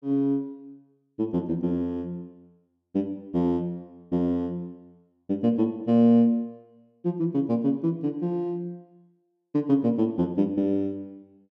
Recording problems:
none

